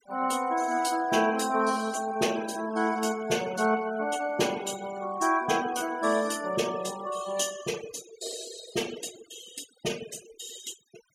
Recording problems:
denoising artefacts; signal-to-artefact ratio 15 dB

